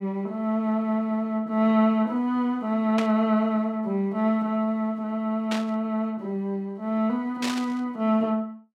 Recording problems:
burst of static; at 3 s, at 5.5 s and at 7.5 s; peak -2 dB vs average level

